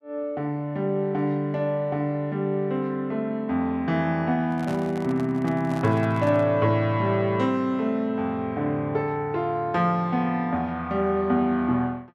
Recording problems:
microphone handling noise; from 4.5 to 6.5 s; peak -7 dB vs average level

